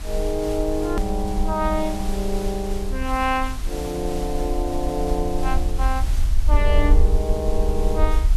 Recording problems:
background hiss; slope -2 dB per octave, SNR 12 dB
low-frequency rumble; below 54 Hz, strongest tone 20 Hz, SNR 1 dB
edit click; at 1 s

